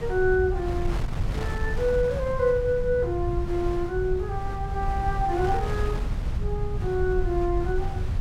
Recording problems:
low-frequency rumble; below 94 Hz, SNR 4 dB
wind on the microphone; below 1 kHz, SNR 12 dB

